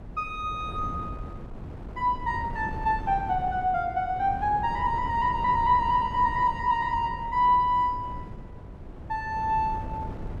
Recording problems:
wind noise; below 260 Hz, SNR 12 dB

